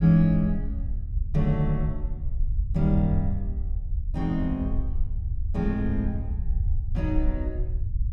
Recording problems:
rumble; below 70 Hz, SNR 3 dB

